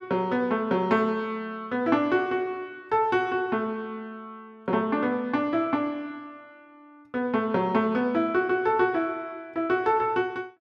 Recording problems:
none

